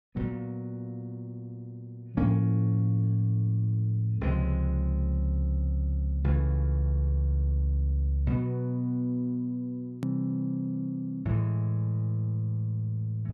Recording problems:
click at an edit; at 10 s

